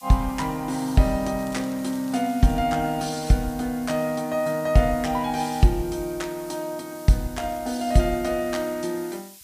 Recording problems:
lossy compression; MP3, log-spectral distance 2 dB, nothing above 11 kHz
hiss; slope +5 dB per octave, SNR 20 dB
crackling; from 1.5 to 2.5 s; loose cable, SNR 24 dB

